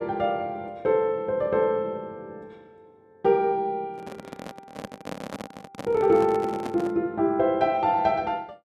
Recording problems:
microphone handling noise; from 4 to 7 s; peak -6 dB vs average level

